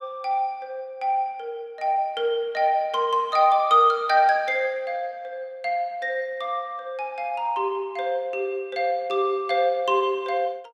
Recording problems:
none

